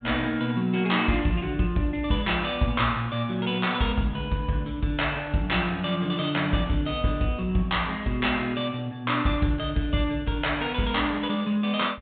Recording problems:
treble missing; nothing above 4 kHz

